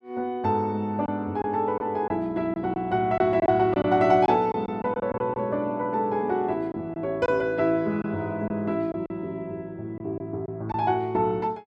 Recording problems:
lost packets; 6% of the sound replaced, filled with silence

